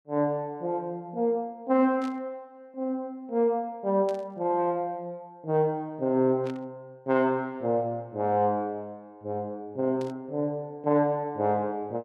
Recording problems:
burst of static; 4 times, first at 2 s; peak -13 dB vs average level

